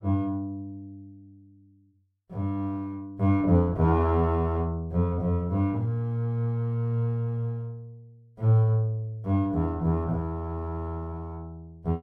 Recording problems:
none

